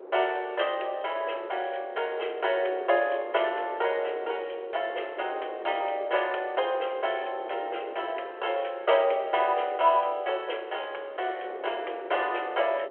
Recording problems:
telephone audio; 340 Hz to 3.3 kHz, G.726
wind noise; below 590 Hz, SNR 14 dB

